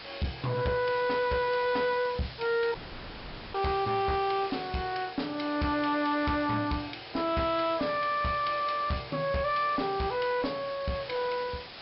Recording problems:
low-pass filter; nothing above 5.3 kHz
distorted audio; hard clipping, uneven, signal-to-distortion ratio 10 dB
background hiss; SNR 14 dB
audio cutting out; at 3 s for 1 s

